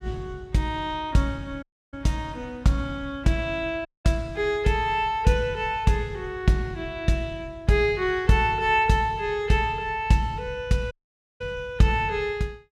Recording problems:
audio cutting out; at 1.5 s, at 4 s and at 11 s

